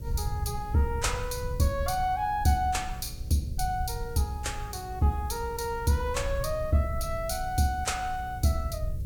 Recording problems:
hum; 60 Hz, harmonics up to 600 Hz, SNR 16 dB
hiss; slope +4 dB per octave, SNR 27 dB
rumble; below 98 Hz, SNR 9 dB

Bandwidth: 18 kHz